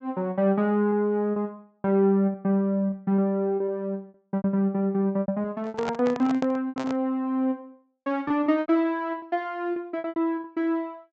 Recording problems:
treble missing; nothing above 8 kHz
lost packets; 10% of the sound replaced, filled with repeated pitch periods
microphone handling noise; from 5.5 to 7 s; peak -2 dB vs average level

